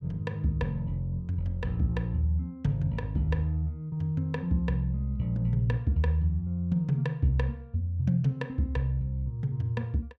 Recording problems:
none

